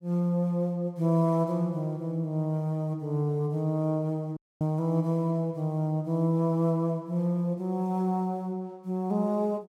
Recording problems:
audio cutting out; at 4.5 s

